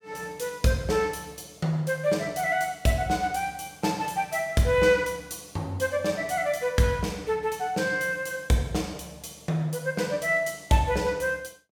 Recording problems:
none

